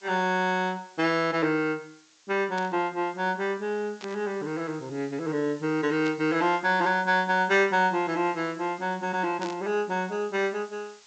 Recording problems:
treble missing; nothing above 8 kHz
hiss; slope +2 dB per octave, SNR 26 dB
static burst; 4 times, first at 2.5 s; peak -9 dB vs average level

